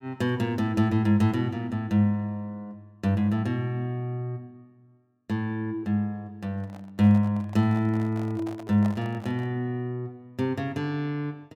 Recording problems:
microphone handling noise; from 6.5 to 9.5 s; peak -7 dB vs average level

